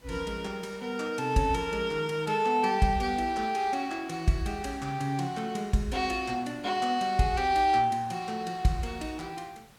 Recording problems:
hiss; slope -3 dB per octave, SNR 28 dB

